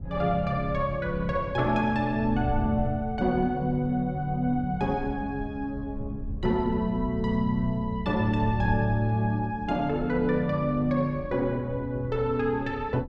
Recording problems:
wind on the microphone; below 110 Hz, SNR 11 dB

